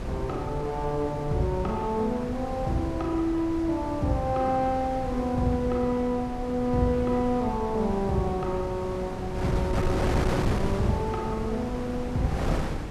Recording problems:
wind on the microphone; below 450 Hz, SNR 5 dB

